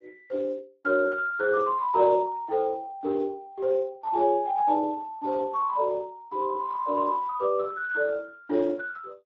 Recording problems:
codec artefacts; Speex, log-spectral distance 2 dB

